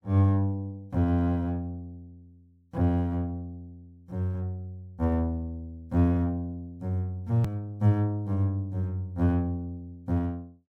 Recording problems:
edit click; at 7.5 s

